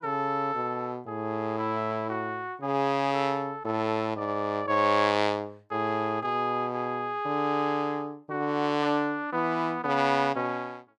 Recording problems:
none

